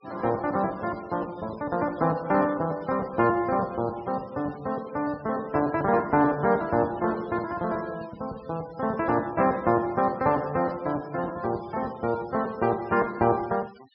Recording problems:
treble cut off; nothing above 5.4 kHz
denoising artefacts; signal-to-artefact ratio 22 dB

